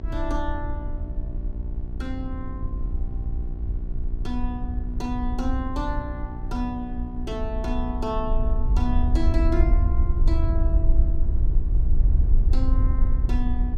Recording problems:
hum; 60 Hz, harmonics up to 780 Hz, SNR 8 dB
wind noise; below 60 Hz, SNR -6 dB

